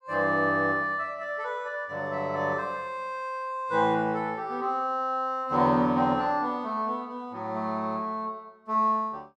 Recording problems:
none

